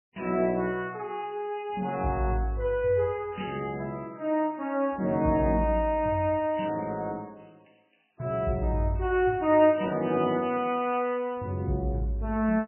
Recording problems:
codec artefacts; MP3, log-spectral distance 4 dB, nothing above 3 kHz

